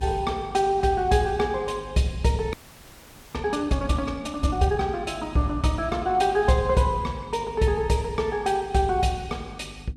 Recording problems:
electrical hum; 50 Hz, harmonics up to 300 Hz, SNR 20 dB
frozen audio; at 2.5 s for 1 s

